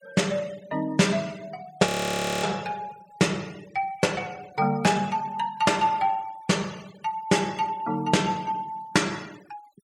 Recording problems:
noise reduction artefacts; signal-to-artefact ratio 22 dB
audio freezing; at 2 s for 0.5 s

